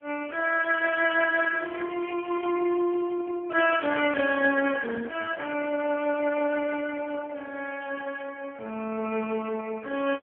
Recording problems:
phone line; 240 Hz to 3 kHz, AMR-NB

